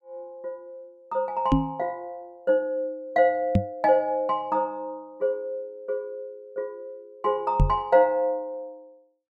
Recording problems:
knock on the microphone; at 1.5 s, at 3.5 s and at 7.5 s; peak +8 dB vs average level

